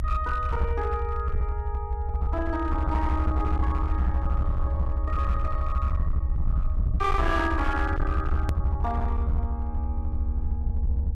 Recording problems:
distortion; hard clipping, uneven, signal-to-distortion ratio 10 dB
rumble; below 74 Hz, SNR -3 dB
edit click; at 8.5 s

